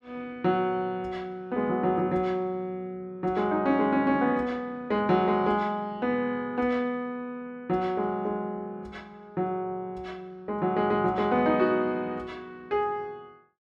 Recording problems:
none

